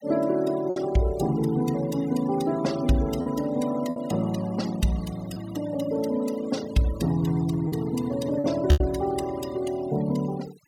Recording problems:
noise reduction artefacts; signal-to-artefact ratio 17 dB
packet loss; 3% of the sound replaced, filled with repeated pitch periods

